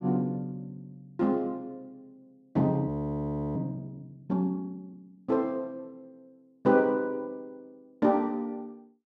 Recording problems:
audio freezing; at 3 s for 0.5 s

